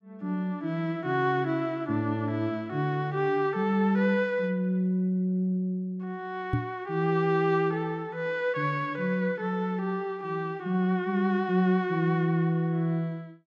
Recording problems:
knock on the microphone; at 6.5 s; peak +4 dB vs average level

